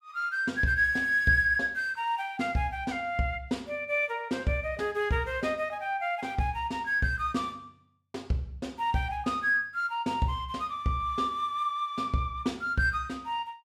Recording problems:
none

